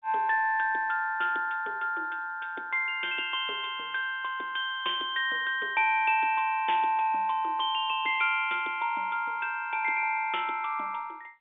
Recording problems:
phone line; 260 Hz to 3.6 kHz, G.711

